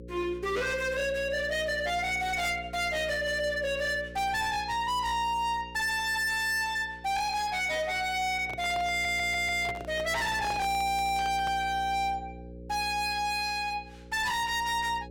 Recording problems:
distorted audio; hard clipping, signal-to-distortion ratio 6 dB
hum; 60 Hz, harmonics up to 540 Hz, SNR 17 dB
handling noise; from 8.5 to 12 s; peak -5 dB vs average level
audio stuttering; at 9 s

